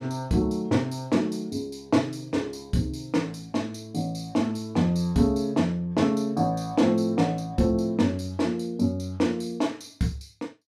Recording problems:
none

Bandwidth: 14.5 kHz